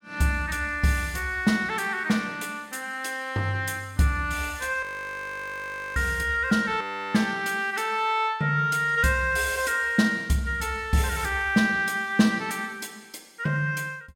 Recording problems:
audio freezing; at 5 s for 1 s and at 7 s

